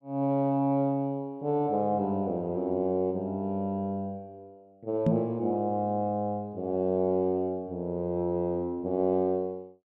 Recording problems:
knock on the microphone; at 5 s; peak +7 dB vs average level

